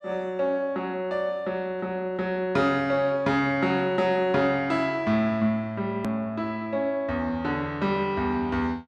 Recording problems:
hard cut with a click; at 6 s

